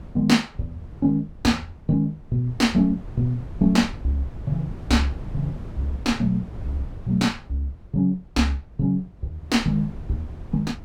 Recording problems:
wind on the microphone; below 150 Hz, SNR 14 dB

